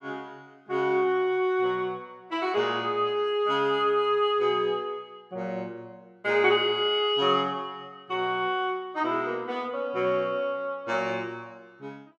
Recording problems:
none

